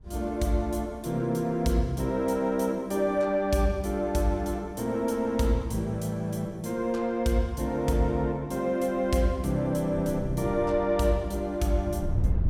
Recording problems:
wind on the microphone; below 120 Hz, SNR 11 dB

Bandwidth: 16.5 kHz